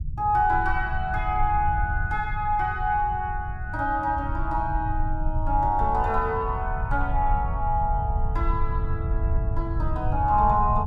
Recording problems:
low-frequency rumble; below 84 Hz, SNR 4 dB

